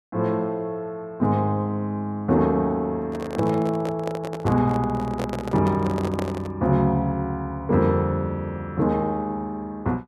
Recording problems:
microphone handling noise; from 3 to 6.5 s; peak -2 dB vs average level

